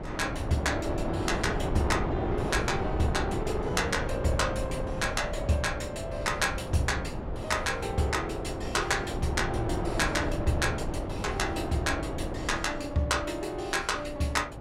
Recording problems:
wind on the microphone; below 540 Hz, SNR 4 dB

